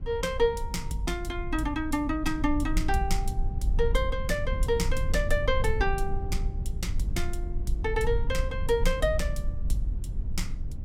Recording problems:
rumble; below 64 Hz, SNR 3 dB

